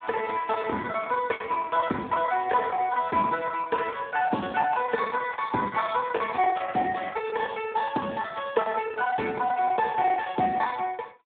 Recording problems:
telephone audio; 260 Hz to 3.3 kHz, Speex
lost packets; 17% of the sound replaced, filled with the last packet

